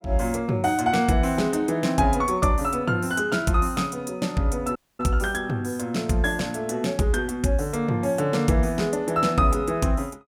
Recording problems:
dropout; at 5 s

